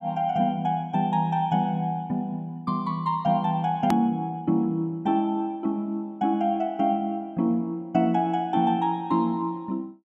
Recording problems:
edit click; at 4 s

